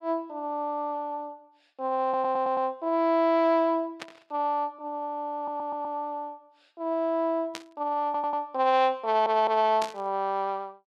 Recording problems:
audio stuttering; 4 times, first at 2 s
burst of static; at 4 s, at 7.5 s and at 10 s; peak -4 dB vs average level

